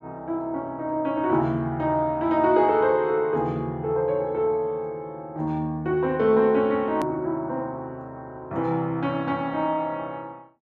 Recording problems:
click at an edit; at 7 s

